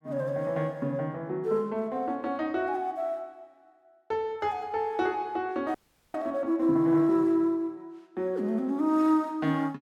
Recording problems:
audio freezing; at 6 s

